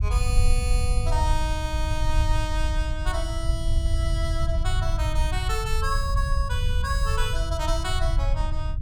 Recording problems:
rumble; below 74 Hz, SNR -4 dB

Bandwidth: 17.5 kHz